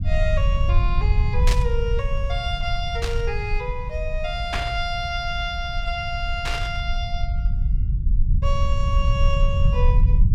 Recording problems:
low-frequency rumble; below 70 Hz, SNR -4 dB
static burst; 4 times, first at 1.5 s; peak +5 dB vs average level

